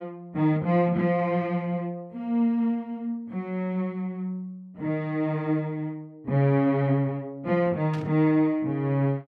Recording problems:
static burst; at 8 s; peak -12 dB vs average level

